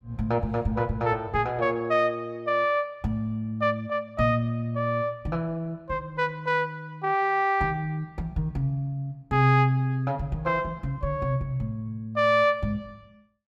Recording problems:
none

